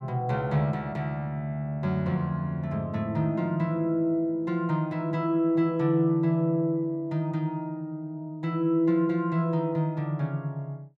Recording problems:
none

